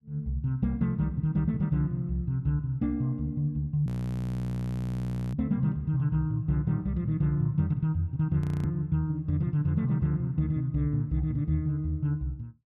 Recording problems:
frozen audio; at 4 s for 1.5 s and at 8.5 s

